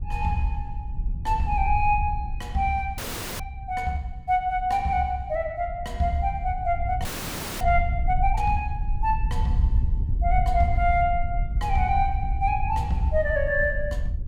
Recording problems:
wind on the microphone; below 70 Hz, SNR 4 dB
frozen audio; at 3 s and at 7 s for 0.5 s

